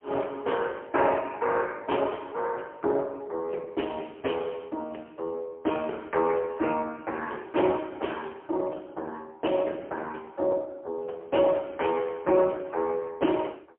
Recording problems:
telephone audio; 280 Hz to 3.2 kHz, AMR-NB, then MP3

